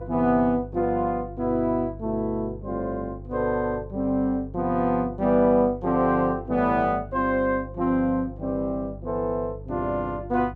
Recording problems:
electrical hum; 50 Hz, harmonics up to 500 Hz, SNR 15 dB

